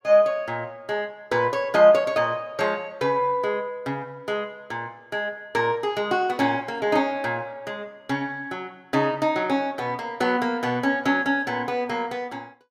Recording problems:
none

